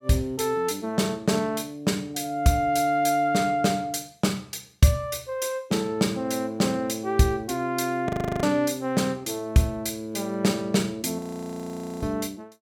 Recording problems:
frozen audio; at 8 s and at 11 s for 1 s

